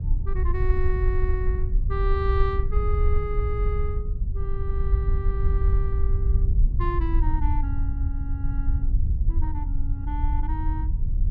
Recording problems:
rumble; below 68 Hz, SNR -8 dB

